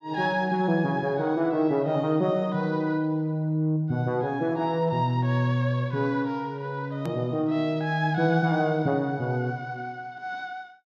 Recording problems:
click at an edit; at 7 s

